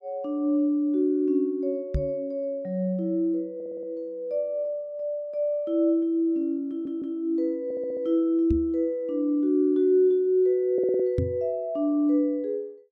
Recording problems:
microphone thump; at 2 s, at 8.5 s and at 11 s; peak +2 dB vs average level
audio stuttering; 4 times, first at 3.5 s

